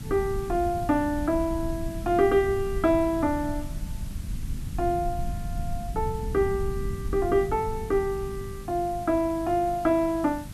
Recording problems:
electrical hum; 50 Hz, harmonics up to 600 Hz, SNR 18 dB
hiss; slope 0 dB per octave, SNR 22 dB
rumble; below 110 Hz, SNR 10 dB

